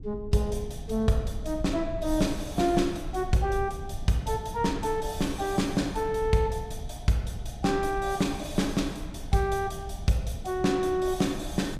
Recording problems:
rumble; below 92 Hz, SNR 12 dB

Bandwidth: 15 kHz